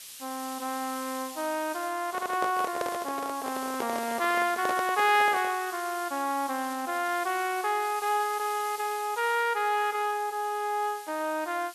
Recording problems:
hiss; slope +4 dB per octave, SNR 13 dB
handling noise; from 2 to 5.5 s; peak 0 dB vs average level
audio stuttering; at 2 s

